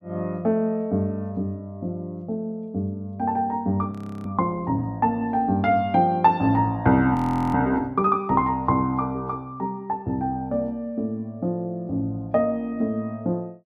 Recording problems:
audio freezing; at 4 s and at 7 s

